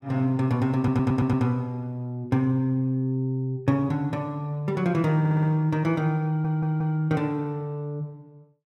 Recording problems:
stutter; at 1 s, at 5 s and at 6.5 s

